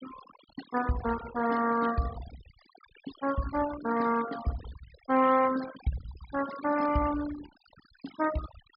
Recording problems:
treble cut off; nothing above 5.5 kHz
noise reduction artefacts; signal-to-artefact ratio 13 dB

